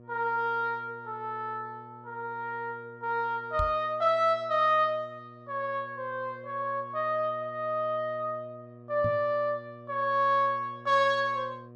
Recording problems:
hum; 60 Hz, harmonics up to 1.2 kHz, SNR 21 dB
microphone thump; at 3.5 s and at 9 s; peak -2 dB vs average level

